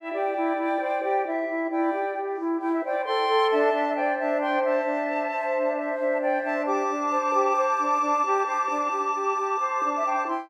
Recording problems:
none

